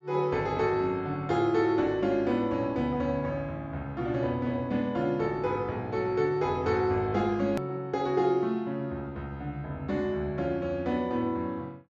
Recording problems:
treble missing; nothing above 7.6 kHz
edit click; at 7.5 s

